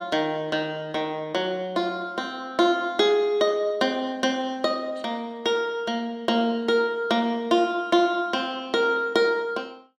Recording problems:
none

